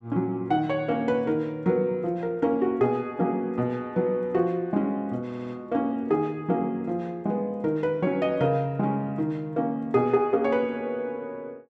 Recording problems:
stutter; at 5.5 s

